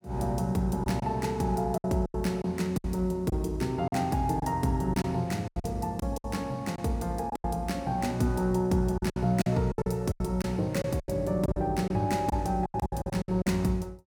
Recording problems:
lost packets; 11% of the sound replaced, filled with silence

